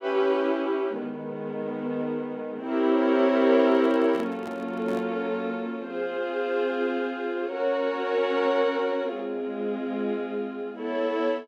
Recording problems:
microphone handling noise; from 3.5 to 5 s; peak -9 dB vs average level

